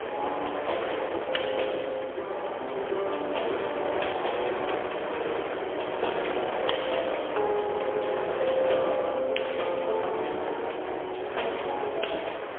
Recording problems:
phone line; 320 Hz to 3.4 kHz, AMR-NB, then MP3
wind noise; below 1.4 kHz, SNR 4 dB

